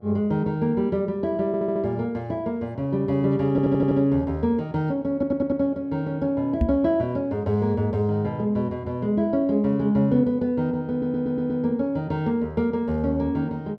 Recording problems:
hum; 60 Hz, harmonics up to 1.3 kHz, SNR 28 dB
stutter; 4 times, first at 1.5 s
microphone bump; at 6.5 s; peak +5 dB vs average level

